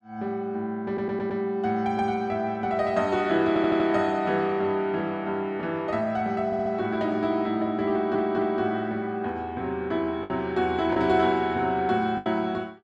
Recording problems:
lost packets; 1.4% of the sound replaced, filled with the last packet
stutter; 4 times, first at 1 s

